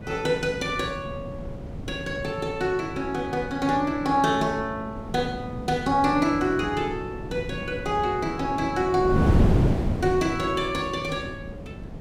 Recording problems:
wind on the microphone; below 270 Hz, SNR 5 dB

